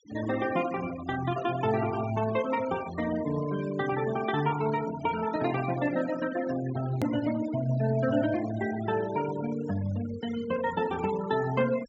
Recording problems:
treble cut off; nothing above 8 kHz
denoising artefacts; signal-to-artefact ratio 13 dB
edit click; at 7 s

